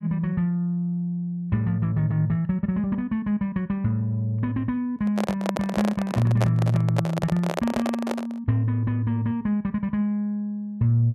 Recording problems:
microphone handling noise; from 5 to 8.5 s; peak +2 dB vs average level

